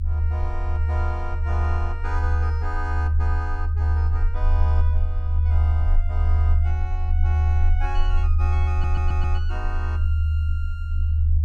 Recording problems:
rumble; below 78 Hz, strongest tone 78 Hz, SNR -12 dB
audio stuttering; at 8.5 s

